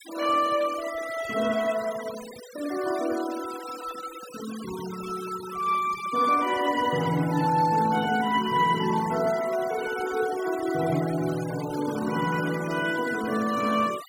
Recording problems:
noise reduction artefacts; signal-to-artefact ratio 14 dB

